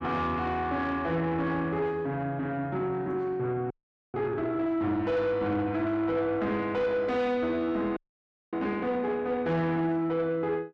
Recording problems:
distorted audio; soft clipping, signal-to-distortion ratio 10 dB
audio freezing; at 3.5 s and at 8 s for 0.5 s

